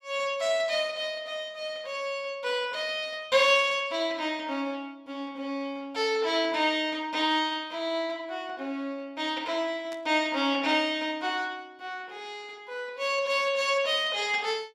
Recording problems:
burst of static; at 10 s; peak -13 dB vs average level

